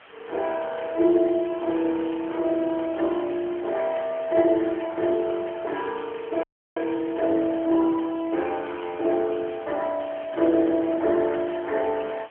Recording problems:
phone line; 280 Hz to 3.4 kHz, AMR-NB
hiss; SNR 24 dB
audio freezing; at 6.5 s

